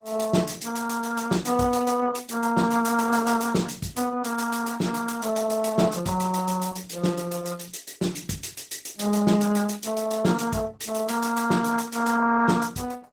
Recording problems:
codec artefacts; Opus, then Opus, log-spectral distance 6 dB

